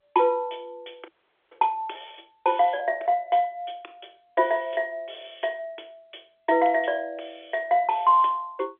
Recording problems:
phone line; 280 Hz to 3.5 kHz, G.711
audio freezing; at 1 s

